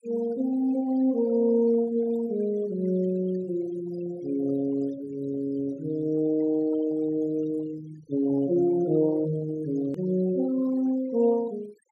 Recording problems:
noise reduction artefacts; signal-to-artefact ratio 21 dB
hard cut with a click; at 10 s

